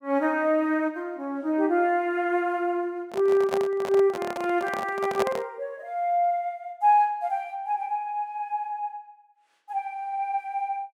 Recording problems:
handling noise; from 3 to 5.5 s; peak +3 dB vs average level

